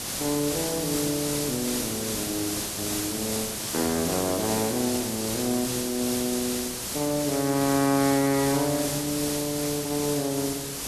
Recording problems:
background hiss; SNR 2 dB

